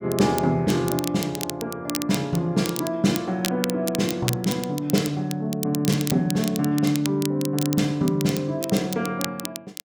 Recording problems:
crackle; vinyl, SNR 9 dB

